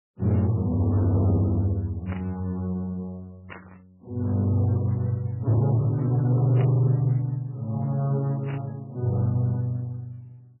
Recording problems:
codec artefacts; Speex, then MP3, log-spectral distance 2 dB, nothing above 11.3 kHz
distortion; hard clipping, signal-to-distortion ratio 10 dB
burst of static; 4 times, first at 2 s; peak -10 dB vs average level

